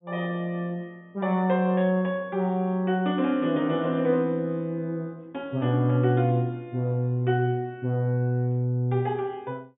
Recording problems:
low-pass filter; nothing above 3.7 kHz

